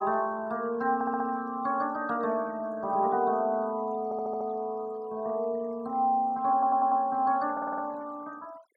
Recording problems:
denoising artefacts; signal-to-artefact ratio 26 dB
stutter; 4 times, first at 1 s

